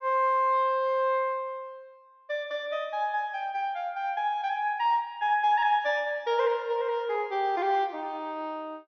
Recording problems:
treble cut off; nothing above 6.4 kHz

